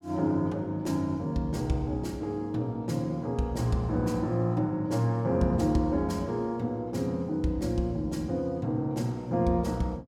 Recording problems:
none

